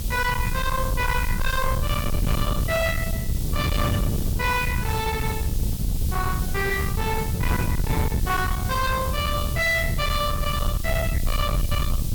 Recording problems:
distorted audio; soft clipping, signal-to-distortion ratio 8 dB
hiss; SNR 10 dB
low-frequency rumble; below 92 Hz, SNR 3 dB
wind on the microphone; below 170 Hz, SNR 2 dB

